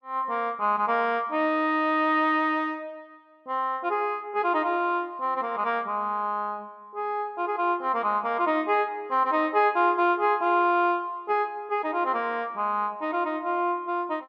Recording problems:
none

